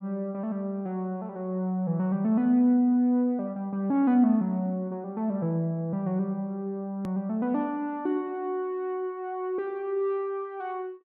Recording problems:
click at an edit; at 7 s

